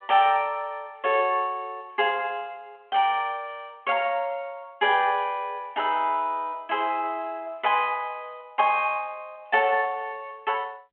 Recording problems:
telephone audio; 280 Hz to 3.4 kHz, G.726

